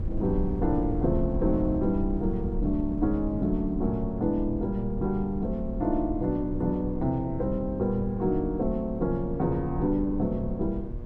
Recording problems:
hum; 60 Hz, harmonics up to 1.1 kHz, SNR 18 dB
wind noise; below 84 Hz, SNR 8 dB

